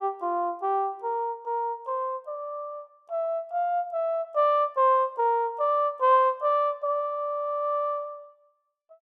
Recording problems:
none

